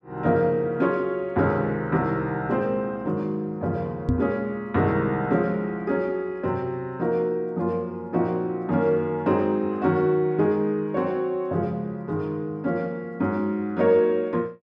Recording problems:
knock on the microphone; at 4 s; peak +5 dB vs average level

